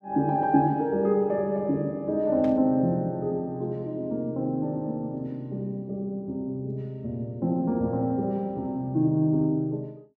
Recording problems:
static burst; at 2.5 s; peak -15 dB vs average level

